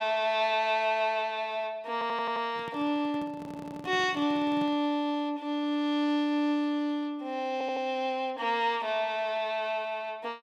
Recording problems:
stutter; at 2 s, at 3.5 s and at 7.5 s
handling noise; from 2.5 to 5 s; peak -9 dB vs average level

